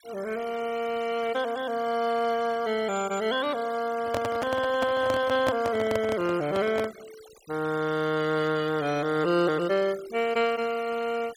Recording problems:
denoising artefacts; signal-to-artefact ratio 19 dB
handling noise; from 4 to 7 s; peak +2 dB vs average level

